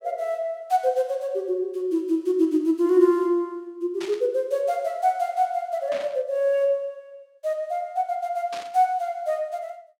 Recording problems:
static burst; at 4 s, at 6 s and at 8.5 s; peak -9 dB vs average level

